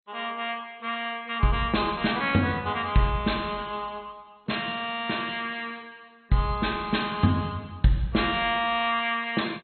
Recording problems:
codec artefacts; MP2, log-spectral distance 6 dB, nothing above 4.2 kHz

